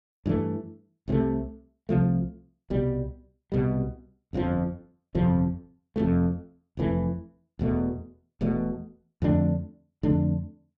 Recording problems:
none

